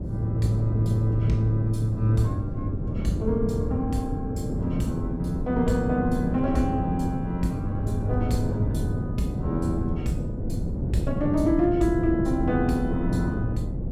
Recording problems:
wind noise; below 230 Hz, SNR 3 dB

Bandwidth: 16.5 kHz